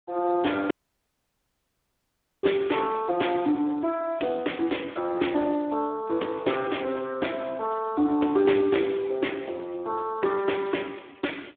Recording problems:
telephone audio; 260 Hz to 3.6 kHz, Speex
audio cutting out; at 0.5 s for 1.5 s

